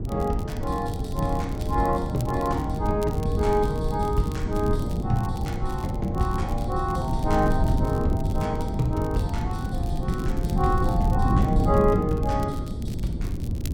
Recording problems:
wind noise; below 180 Hz, SNR 0 dB
crackling; vinyl, SNR 21 dB

